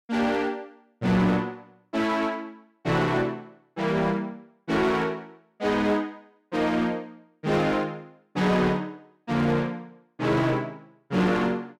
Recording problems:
distortion; hard clipping, uneven, signal-to-distortion ratio 10 dB

